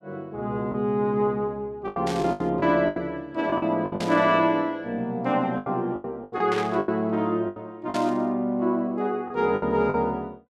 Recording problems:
lost packets; 10% of the sound replaced, filled with the last packet
burst of static; 4 times, first at 2 s; peak -5 dB vs average level

